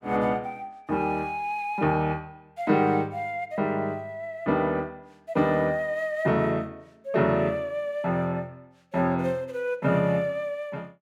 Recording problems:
none

